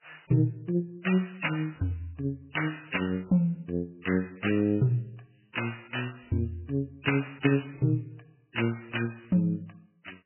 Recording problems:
codec artefacts; MP3, log-spectral distance 6 dB, nothing above 3 kHz

